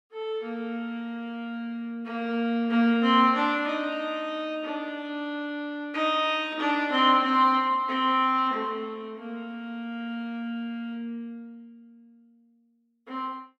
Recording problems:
none

